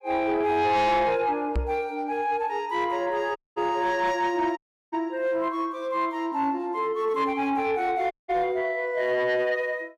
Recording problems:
distortion; soft clipping, signal-to-distortion ratio 11 dB
microphone thump; at 1.5 s; peak +2 dB vs average level
dropout; at 3.5 s, at 4.5 s and at 8 s

